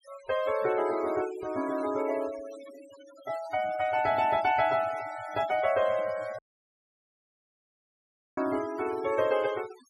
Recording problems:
noise reduction artefacts; signal-to-artefact ratio 18 dB
audio cutting out; at 6.5 s for 2 s

